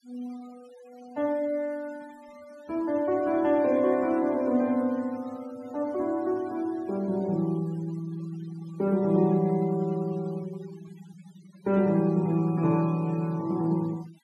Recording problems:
noise reduction artefacts; signal-to-artefact ratio 24 dB

